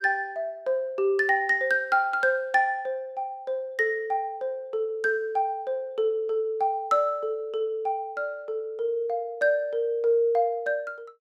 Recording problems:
none

